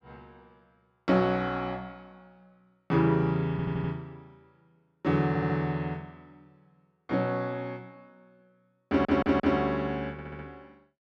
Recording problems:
stutter; 4 times, first at 3.5 s

